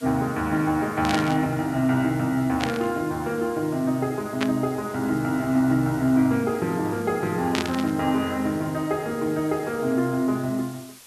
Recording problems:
hiss; slope +1 dB per octave, SNR 21 dB
static burst; 4 times, first at 1 s; peak +1 dB vs average level

